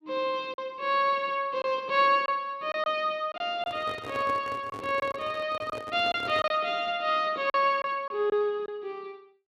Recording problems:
lost packets; 5% of the sound replaced, filled with silence
microphone handling noise; from 3.5 to 6.5 s; peak -7 dB vs average level

